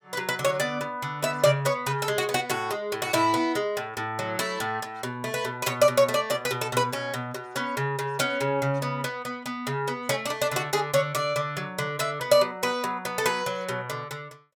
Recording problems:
none

